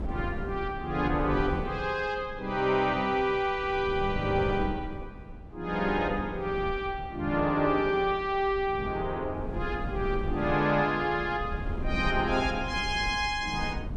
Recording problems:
wind on the microphone; below 200 Hz, SNR 10 dB

